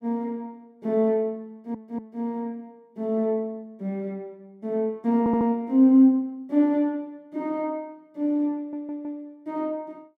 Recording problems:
stutter; at 1.5 s, at 5 s and at 8.5 s

